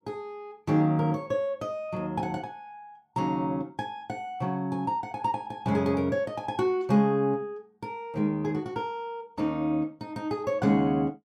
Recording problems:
none

